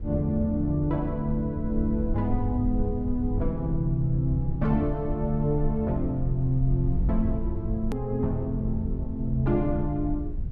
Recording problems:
rumble; below 74 Hz, SNR 6 dB
edit click; at 8 s

